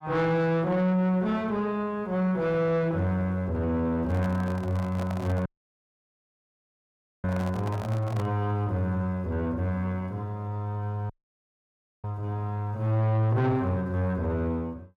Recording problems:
distortion; soft clipping, signal-to-distortion ratio 11 dB
microphone handling noise; from 4 to 8.5 s; peak -6 dB vs average level
audio cutting out; at 5.5 s for 2 s and at 11 s for 1 s

